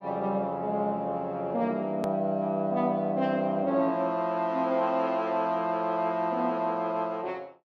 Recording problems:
edit click; at 2 s

